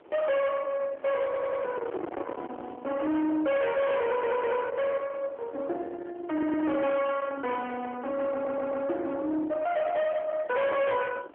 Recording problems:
telephone audio; 280 Hz to 3.4 kHz, AMR-NB
distorted audio; soft clipping, signal-to-distortion ratio 7 dB
wind noise; below 1.1 kHz, SNR 13 dB
stutter; 4 times, first at 1.5 s

